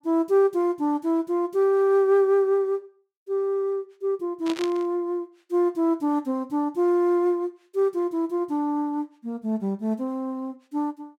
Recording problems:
burst of static; at 4.5 s; peak -6 dB vs average level

